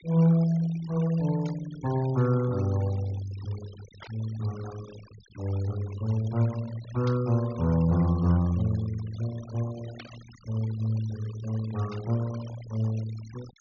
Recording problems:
treble missing; nothing above 6.6 kHz
denoising artefacts; signal-to-artefact ratio 19 dB
static burst; 5 times, first at 1.5 s; peak -12 dB vs average level

